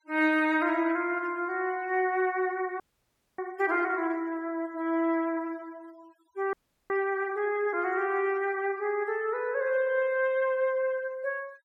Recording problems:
denoising artefacts; signal-to-artefact ratio 27 dB
audio freezing; at 3 s for 0.5 s and at 6.5 s

